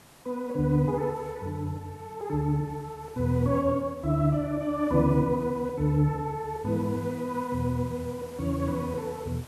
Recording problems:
hiss; slope -4 dB per octave, SNR 23 dB

